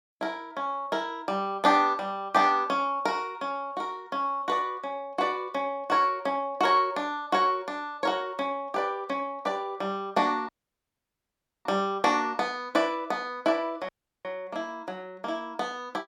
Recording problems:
dropout; at 10 s for 1 s and at 14 s

